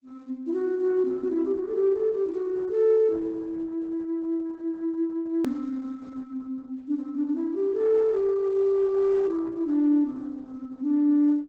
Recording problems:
lossy codec; Opus, log-spectral distance 2 dB, nothing above 18.3 kHz
hard cut with a click; at 5.5 s

